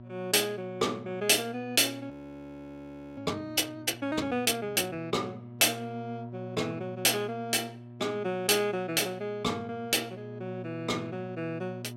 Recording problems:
electrical hum; 60 Hz, harmonics up to 960 Hz, SNR 16 dB
frozen audio; at 2 s for 1 s

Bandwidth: 16.5 kHz